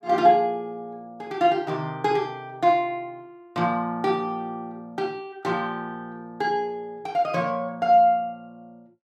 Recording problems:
none

